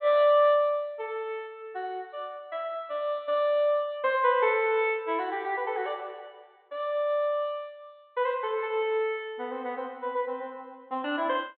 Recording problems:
treble cut off; nothing above 4 kHz

